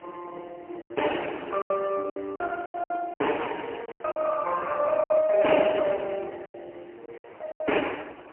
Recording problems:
telephone audio; 300 Hz to 2.9 kHz, AMR-NB, then MP3
wind on the microphone; below 1.4 kHz, SNR 23 dB
lost packets; 11% of the sound replaced, filled with silence

